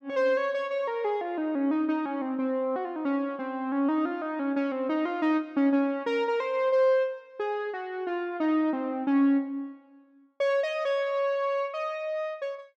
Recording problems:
none

